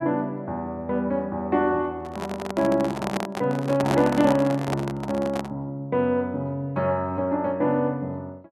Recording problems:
handling noise; from 2 to 5.5 s; peak +2 dB vs average level

